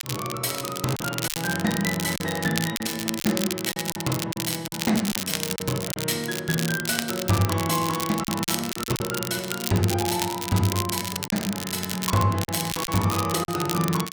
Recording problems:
crackle; vinyl, SNR 4 dB
packet loss; 7% of the sound replaced, filled with silence

